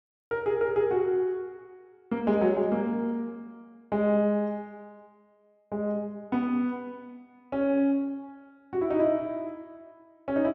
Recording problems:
none

